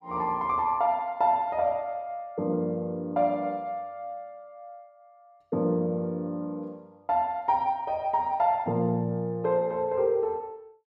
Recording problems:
none

